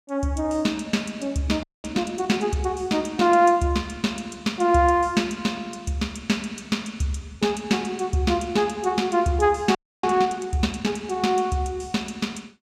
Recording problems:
audio freezing; at 1.5 s and at 10 s

